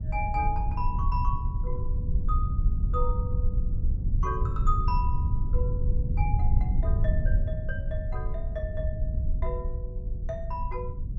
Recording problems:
rumble; below 82 Hz, SNR -6 dB

